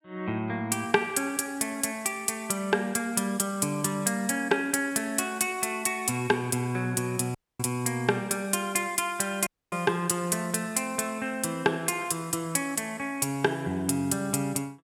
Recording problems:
dropout; at 7.5 s and at 9.5 s

